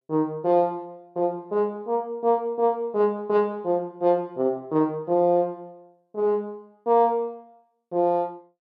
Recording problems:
none

